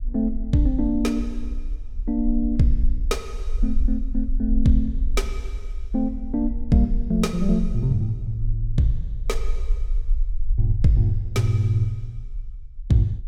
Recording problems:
low-frequency rumble; below 42 Hz, SNR 6 dB

